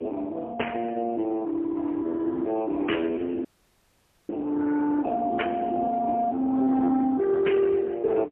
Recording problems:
telephone audio; 240 Hz to 3 kHz, AMR-NB, then MP3
audio freezing; at 3.5 s for 1 s

